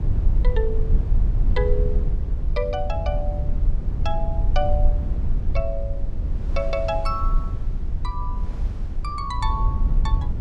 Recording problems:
rumble; below 62 Hz, SNR -5 dB
wind noise; below 660 Hz, SNR 19 dB

